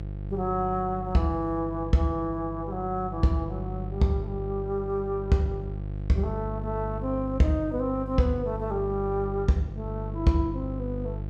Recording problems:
hum; 50 Hz, harmonics up to 550 Hz, SNR 7 dB

